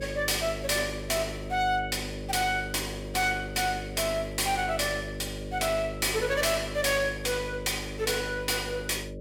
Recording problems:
distorted audio; hard clipping, signal-to-distortion ratio 11 dB
hum; 50 Hz, harmonics up to 600 Hz, SNR 10 dB

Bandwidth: 17 kHz